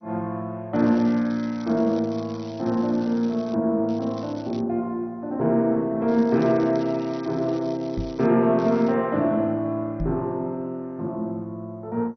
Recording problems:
codec artefacts; MP2, log-spectral distance 3 dB
crackle; 4 times, first at 1 s; loose cable, SNR 25 dB
microphone bump; at 8 s and at 10 s; peak -2 dB vs average level

